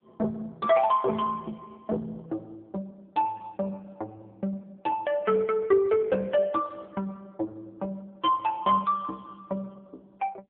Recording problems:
telephone audio; 240 Hz to 2.3 kHz, AMR-NB

